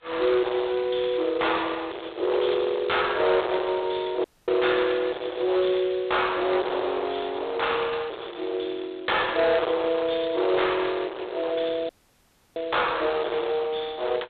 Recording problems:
phone line; 320 Hz to 3.9 kHz, G.726
distortion; hard clipping, signal-to-distortion ratio 6 dB
dropout; at 4 s and at 12 s for 0.5 s

